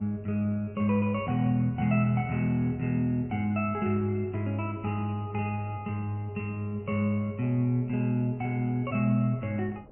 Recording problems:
treble cut off; nothing above 3 kHz
wind noise; below 510 Hz, SNR 24 dB

